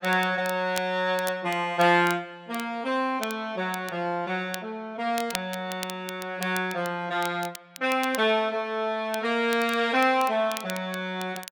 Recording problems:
crackle; vinyl, SNR 14 dB

